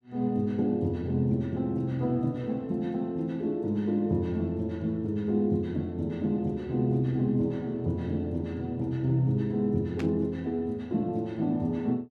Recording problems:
static burst; at 10 s; peak -7 dB vs average level

